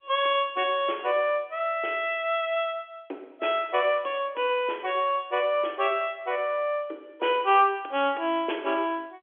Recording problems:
telephone audio; 260 Hz to 3.4 kHz, G.711

